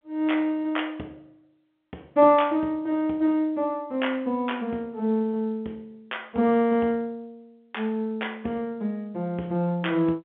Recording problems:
telephone audio; 190 Hz to 3.5 kHz, G.711

